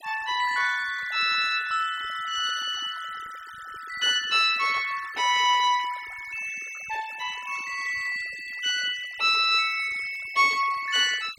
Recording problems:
denoising artefacts; signal-to-artefact ratio 18 dB

